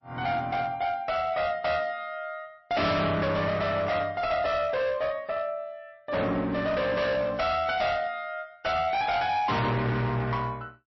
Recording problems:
codec artefacts; MP3, log-spectral distance 2 dB, nothing above 5.7 kHz
distortion; hard clipping, signal-to-distortion ratio 6 dB

